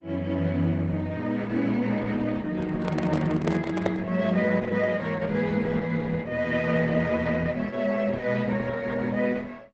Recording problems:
lossy compression; Opus, log-spectral distance 3 dB, nothing above 7.8 kHz
microphone handling noise; from 2.5 to 4 s; peak +2 dB vs average level

